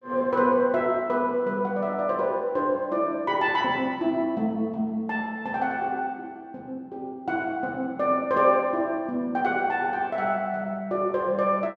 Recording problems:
none

